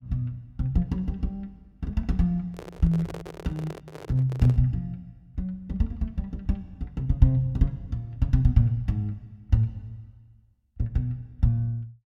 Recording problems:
microphone handling noise; from 2.5 to 4.5 s; peak -8 dB vs average level

